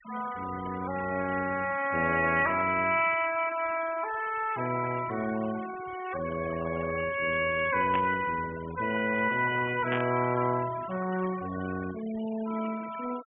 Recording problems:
treble missing; nothing above 3.2 kHz
noise reduction artefacts; signal-to-artefact ratio 16 dB
burst of static; at 8 s and at 10 s; peak -1 dB vs average level

